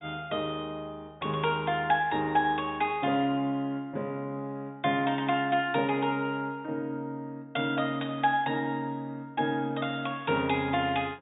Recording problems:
treble cut off; nothing above 4 kHz

